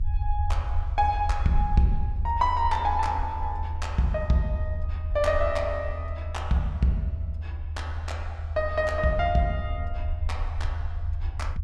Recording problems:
low-frequency rumble; below 80 Hz, SNR 4 dB

